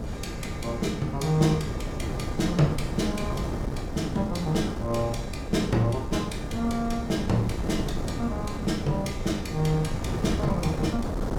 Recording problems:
wind on the microphone; below 340 Hz, SNR 4 dB

